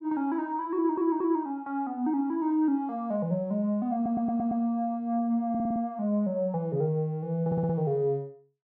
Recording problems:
audio stuttering; 4 times, first at 1 s

